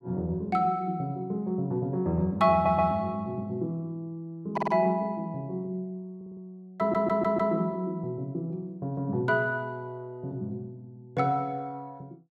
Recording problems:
audio stuttering; 4 times, first at 2.5 s

